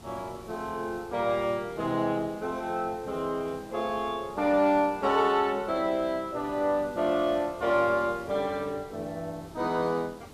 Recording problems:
background hiss; SNR 20 dB

